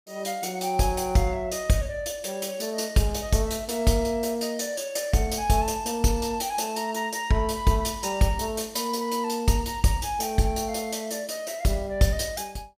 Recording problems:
none

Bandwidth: 15.5 kHz